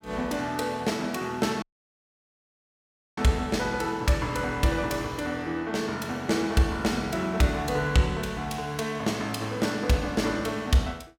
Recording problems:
dropout; at 1.5 s for 1.5 s

